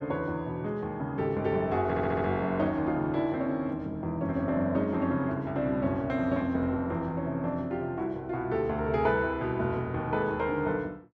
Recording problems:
audio stuttering; at 2 s

